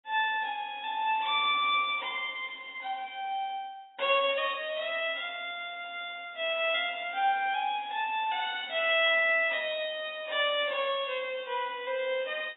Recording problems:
lossy codec; AAC, log-spectral distance 5 dB, nothing above 3.5 kHz

